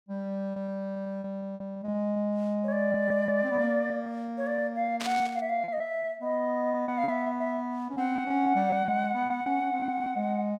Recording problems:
lost packets; 10% of the sound replaced, filled with repeated pitch periods
burst of static; at 5 s; peak -2 dB vs average level

